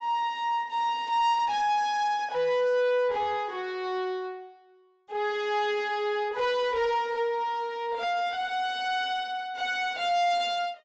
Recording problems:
treble missing; nothing above 8 kHz
distorted audio; soft clipping, signal-to-distortion ratio 10 dB

